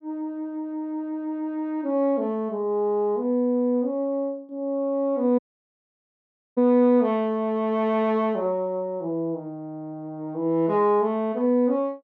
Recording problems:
dropout; at 5.5 s for 1 s

